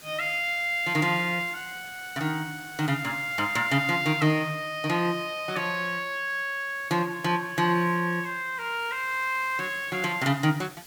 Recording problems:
hiss; SNR 20 dB

